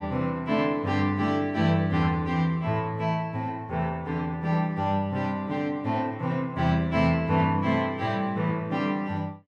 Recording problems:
none

